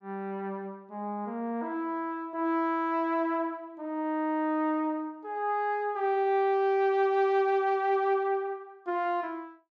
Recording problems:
none

